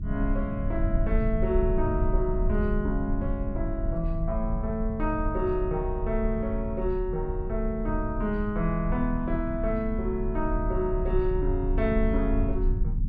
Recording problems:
low-frequency rumble; below 74 Hz, strongest tone 32 Hz, SNR 2 dB

